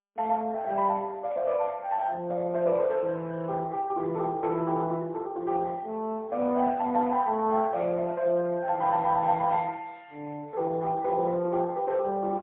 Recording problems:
telephone audio; 190 Hz to 3.6 kHz, AMR-NB, then MP3

